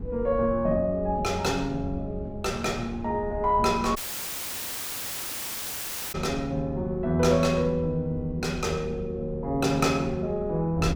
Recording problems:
wind noise; below 160 Hz, SNR 14 dB
audio cutting out; at 4 s for 2 s

